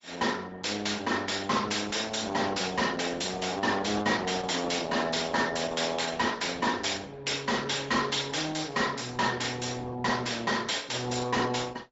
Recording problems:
low-pass filter; nothing above 7.6 kHz
lossy compression; Opus, log-spectral distance 5 dB
distortion; hard clipping, signal-to-distortion ratio 10 dB

